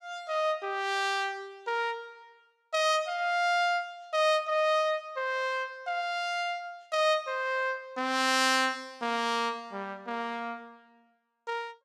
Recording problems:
none

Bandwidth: 15 kHz